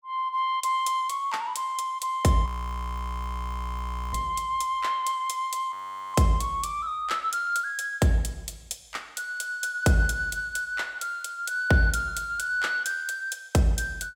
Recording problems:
audio freezing; at 2.5 s for 1.5 s and at 5.5 s

